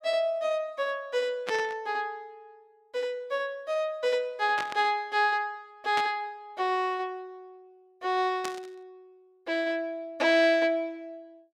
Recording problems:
burst of static; 4 times, first at 1.5 s; peak -1 dB vs average level

